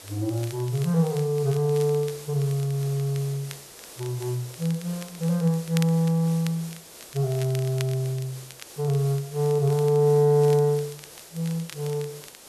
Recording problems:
background hiss; SNR 18 dB
crackle; vinyl, SNR 21 dB

